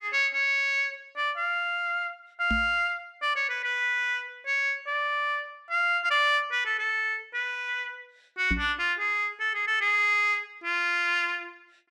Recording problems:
microphone bump; at 2.5 s and at 8.5 s; peak 0 dB vs average level

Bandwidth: 13.5 kHz